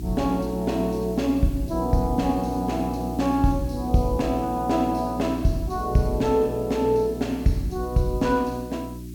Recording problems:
hum; 60 Hz, harmonics up to 360 Hz, SNR 10 dB
background hiss; slope +4 dB per octave, SNR 24 dB

